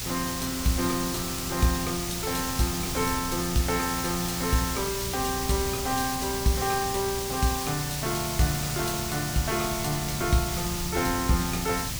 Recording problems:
hum; 60 Hz, harmonics up to 480 Hz, SNR 14 dB
hiss; slope +1 dB per octave, SNR 3 dB
wind on the microphone; below 150 Hz, SNR 13 dB

